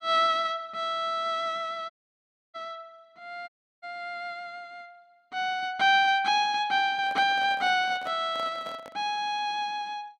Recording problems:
dropout; at 2 s for 0.5 s and at 3.5 s
handling noise; from 7 to 9 s; peak -12 dB vs average level

